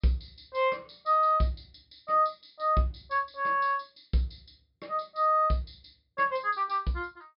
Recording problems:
treble cut off; nothing above 5.5 kHz

